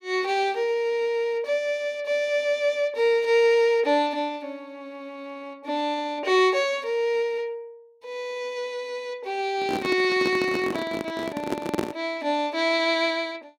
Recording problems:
handling noise; from 9.5 to 12 s; peak +3 dB vs average level

